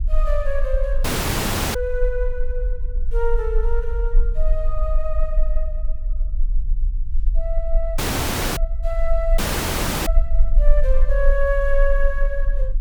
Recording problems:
low-frequency rumble; below 38 Hz, strongest tone 18 Hz, SNR -3 dB
audio cutting out; at 1 s for 0.5 s, at 8 s for 0.5 s and at 9.5 s for 0.5 s

